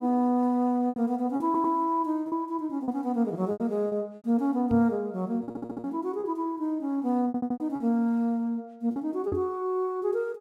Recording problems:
packet loss; 7% of the sound replaced, filled with repeated pitch periods
stutter; at 1.5 s, at 5.5 s and at 7.5 s
knock on the microphone; at 4.5 s and at 9.5 s; peak -3 dB vs average level

